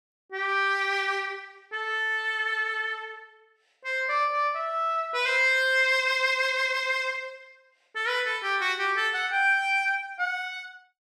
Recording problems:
none

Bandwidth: 12.5 kHz